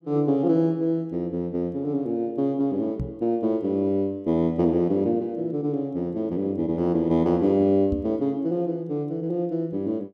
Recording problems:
microphone bump; at 3 s and at 8 s; peak -1 dB vs average level

